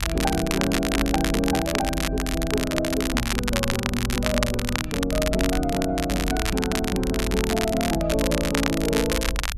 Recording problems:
low-frequency rumble; below 70 Hz, strongest tone 50 Hz, SNR 7 dB
crackling; vinyl, SNR 3 dB

